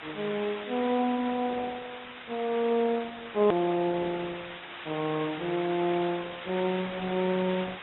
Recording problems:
low-pass filter; nothing above 3.7 kHz
lossy compression; MP3, then Opus, log-spectral distance 20 dB
background hiss; SNR 12 dB
edit click; at 3.5 s

